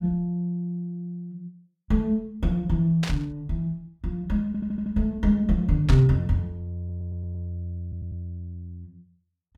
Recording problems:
burst of static; at 3 s and at 6 s; peak -2 dB vs average level
stutter; at 4.5 s, at 7 s and at 8 s

